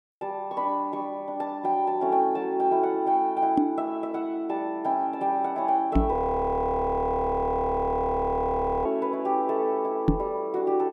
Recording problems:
knock on the microphone; at 3.5 s, at 6 s and at 10 s; peak +8 dB vs average level
audio freezing; at 6 s for 2.5 s

